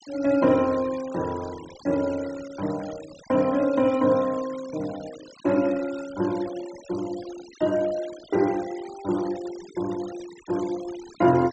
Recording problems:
low-pass filter; nothing above 8 kHz
noise reduction artefacts; signal-to-artefact ratio 19 dB

